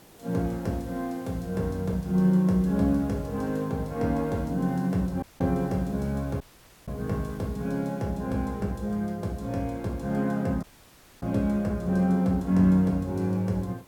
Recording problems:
background hiss; slope -5 dB per octave, SNR 25 dB
audio cutting out; at 5 s, at 6.5 s and at 11 s for 0.5 s

